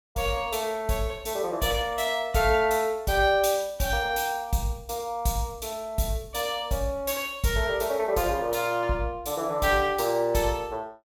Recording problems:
none

